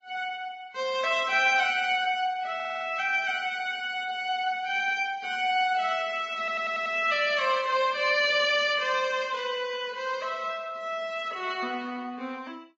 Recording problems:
lossy codec; Vorbis, log-spectral distance 3 dB, nothing above 7.3 kHz
stutter; at 2.5 s and at 6.5 s

